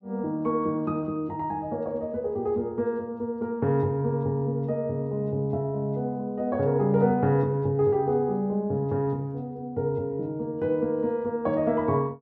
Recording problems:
none

